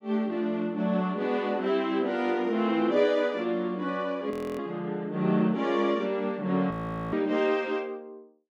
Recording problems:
audio freezing; at 4.5 s and at 6.5 s

